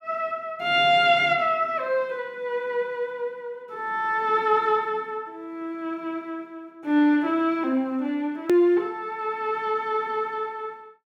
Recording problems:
click at an edit; at 8.5 s

